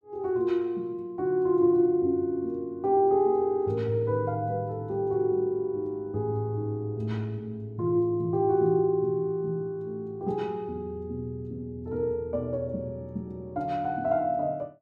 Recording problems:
none

